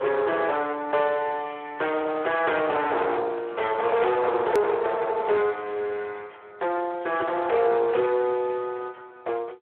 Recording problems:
telephone audio; 340 Hz to 2.8 kHz, Speex
distortion; soft clipping, signal-to-distortion ratio 9 dB
edit click; at 4.5 s

